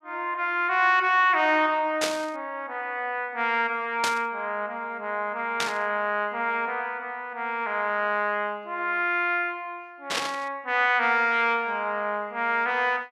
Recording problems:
static burst; 4 times, first at 2 s; peak +2 dB vs average level

